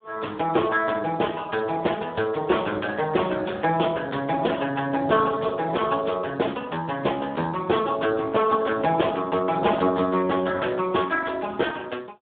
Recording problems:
telephone audio; 220 Hz to 3.6 kHz, Speex

